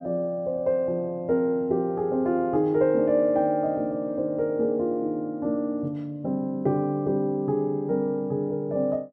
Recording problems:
none

